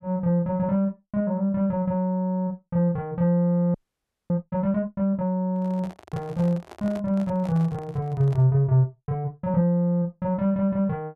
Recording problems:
frozen audio; at 3.5 s for 0.5 s
handling noise; from 5.5 to 8.5 s; peak -11 dB vs average level

